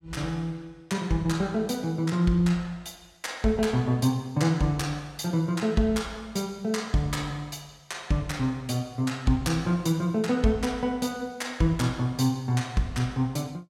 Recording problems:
none

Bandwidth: 16.5 kHz